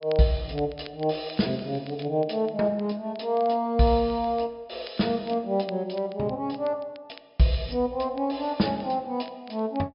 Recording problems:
treble missing; nothing above 5.5 kHz
crackle; vinyl, SNR 25 dB

